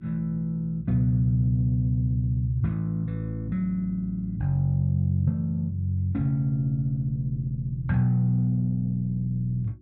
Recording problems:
hum; 60 Hz, harmonics up to 360 Hz, SNR 29 dB

